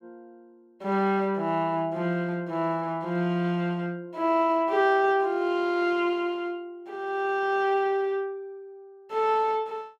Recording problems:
none

